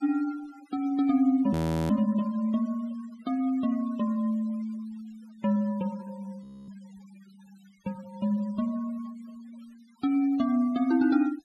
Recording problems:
denoising artefacts; signal-to-artefact ratio 25 dB
frozen audio; at 1.5 s and at 6.5 s

